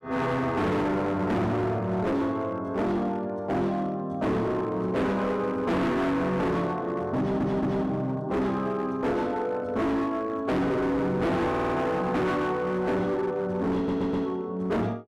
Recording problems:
distorted audio; hard clipping, signal-to-distortion ratio 7 dB
audio stuttering; at 7 s, at 11 s and at 14 s

